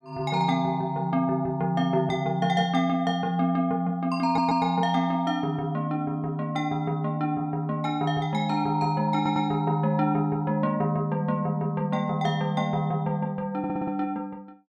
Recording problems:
stutter; at 4.5 s, at 9 s and at 14 s

